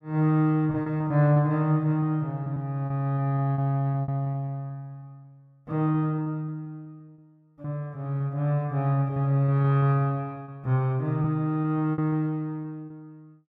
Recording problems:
packet loss; 9% of the sound replaced, filled with repeated pitch periods

